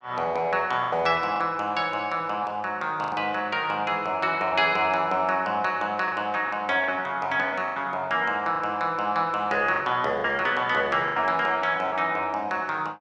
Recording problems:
lost packets; 6% of the sound replaced, filled with the last packet

